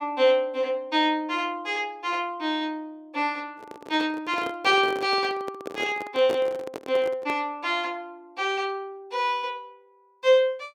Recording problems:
handling noise; from 3.5 to 7.5 s; peak -2 dB vs average level

